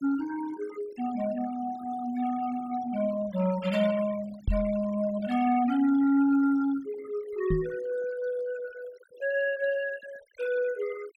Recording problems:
denoising artefacts; signal-to-artefact ratio 18 dB
knock on the microphone; at 4.5 s and at 7.5 s; peak +3 dB vs average level

